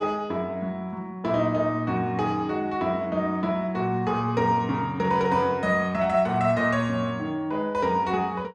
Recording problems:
none

